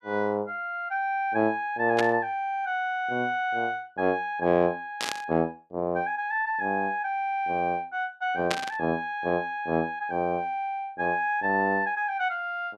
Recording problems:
burst of static; at 2 s, at 5 s and at 8.5 s; peak +3 dB vs average level

